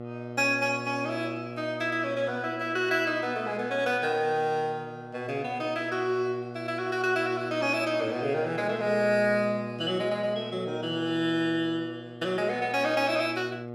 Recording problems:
mains hum; 60 Hz, harmonics up to 1.4 kHz, SNR 13 dB

